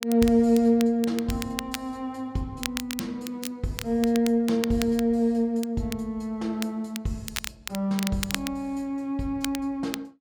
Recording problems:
crackle; vinyl, SNR 10 dB

